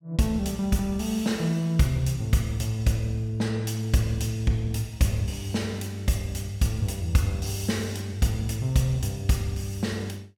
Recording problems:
none

